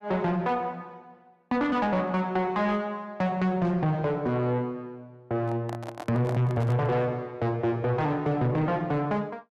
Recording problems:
distortion; soft clipping, signal-to-distortion ratio 10 dB
microphone handling noise; from 5.5 to 7 s; peak -5 dB vs average level

